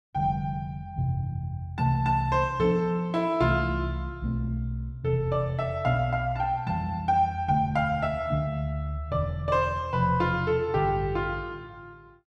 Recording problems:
none

